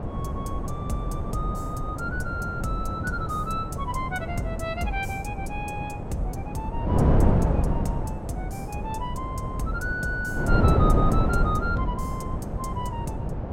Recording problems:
wind noise; below 290 Hz, SNR -4 dB

